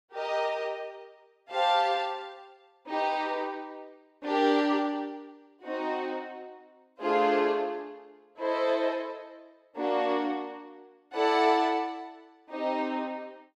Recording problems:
none

